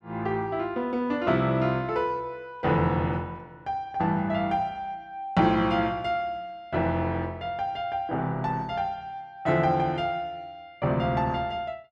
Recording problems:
none

